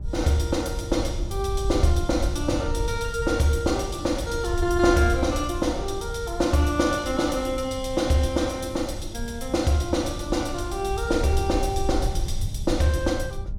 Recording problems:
electrical hum; 50 Hz, harmonics up to 1 kHz, SNR 21 dB
wind noise; below 82 Hz, SNR 8 dB

